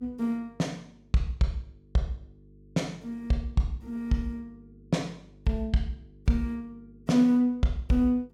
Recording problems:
hum; 50 Hz, harmonics up to 450 Hz, SNR 27 dB

